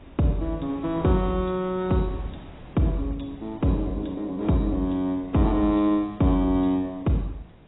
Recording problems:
lossy compression; AAC, log-spectral distance 3 dB, nothing above 3.8 kHz
wind on the microphone; below 450 Hz, SNR 21 dB

